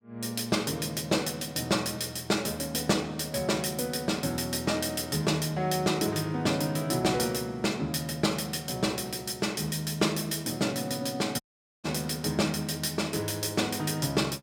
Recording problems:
audio cutting out; at 11 s

